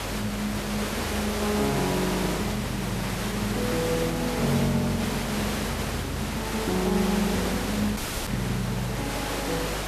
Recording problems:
hum; 50 Hz, harmonics up to 500 Hz, SNR 10 dB
background hiss; slope -4 dB per octave, SNR 2 dB
audio cutting out; at 8 s

